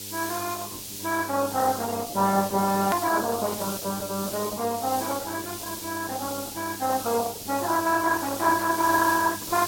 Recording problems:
lossy codec; MP3, then Opus, log-spectral distance 4 dB, nothing above 16.6 kHz
hum; 50 Hz, harmonics up to 1.4 kHz, SNR 18 dB
hiss; SNR 8 dB
edit click; at 3 s

